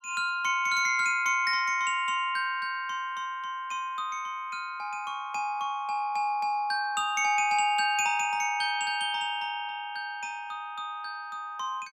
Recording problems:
none

